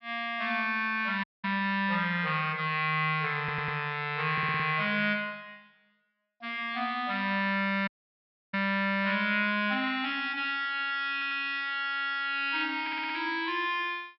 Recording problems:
low-pass filter; nothing above 5.6 kHz
dropout; at 1 s and at 8 s for 0.5 s
stutter; 4 times, first at 3.5 s

